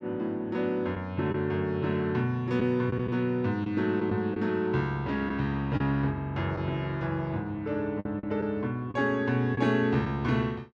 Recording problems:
packet loss; 3% of the sound replaced, filled with the last packet

